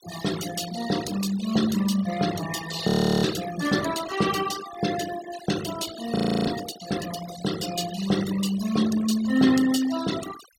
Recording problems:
noise reduction artefacts; signal-to-artefact ratio 10 dB
frozen audio; at 3 s and at 6 s

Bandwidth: 16 kHz